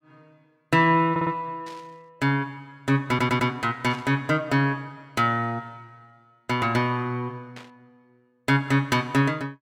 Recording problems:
audio stuttering; at 1 s and at 3 s
static burst; at 1.5 s, at 4 s and at 7.5 s; peak -14 dB vs average level

